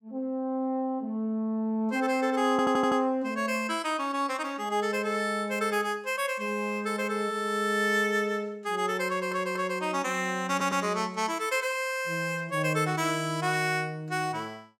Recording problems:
stutter; at 2.5 s, at 9 s and at 11 s

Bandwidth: 16.5 kHz